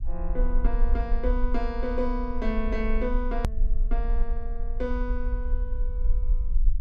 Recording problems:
rumble; below 44 Hz, strongest tone 22 Hz, SNR -3 dB
click at an edit; at 3.5 s

